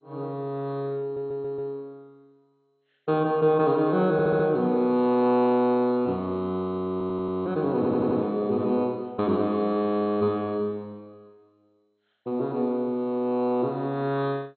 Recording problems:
codec artefacts; MP2, log-spectral distance 2 dB, nothing above 4.2 kHz
stutter; 4 times, first at 1 s

